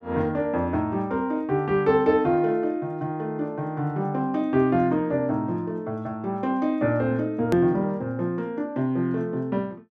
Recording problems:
hard cut with a click; at 7.5 s

